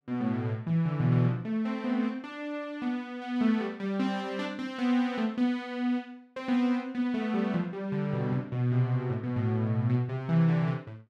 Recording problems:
none

